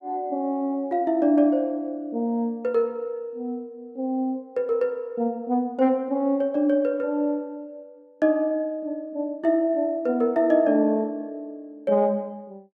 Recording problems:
none

